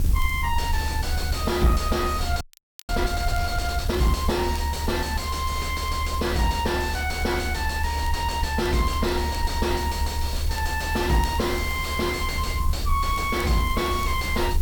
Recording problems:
distorted audio; soft clipping, signal-to-distortion ratio 4 dB
background hiss; SNR 15 dB
low-frequency rumble; below 74 Hz, SNR 2 dB
crackle; vinyl, SNR 24 dB
frozen audio; at 2.5 s

